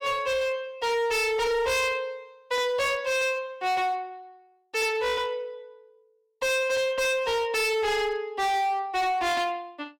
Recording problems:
distorted audio; hard clipping, signal-to-distortion ratio 6 dB

